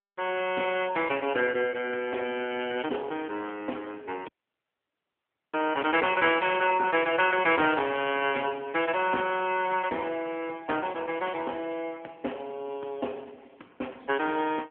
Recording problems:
telephone audio; 260 Hz to 3.3 kHz, AMR-NB
dropout; at 4.5 s for 1.5 s

